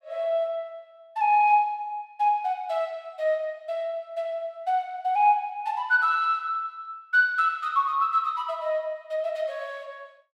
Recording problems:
none

